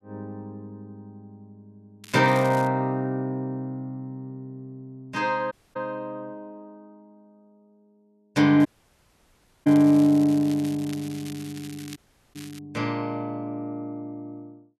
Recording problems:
crackle; at 2 s and from 8.5 to 13 s; loose cable, SNR 20 dB
dropout; at 5.5 s, at 8.5 s for 1 s and at 12 s

